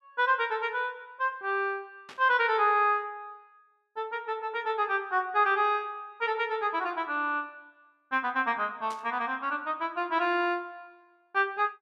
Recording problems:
static burst; at 2 s and at 9 s; peak -13 dB vs average level

